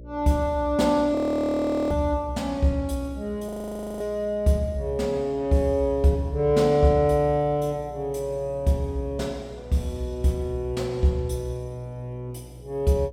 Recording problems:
electrical hum; 60 Hz, harmonics up to 600 Hz, SNR 20 dB
audio freezing; at 1 s for 1 s and at 3.5 s for 0.5 s

